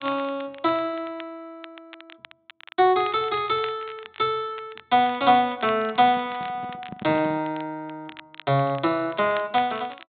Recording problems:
low-pass filter; nothing above 4 kHz
crackling; vinyl, SNR 21 dB
handling noise; from 6 to 7.5 s; peak -7 dB vs average level

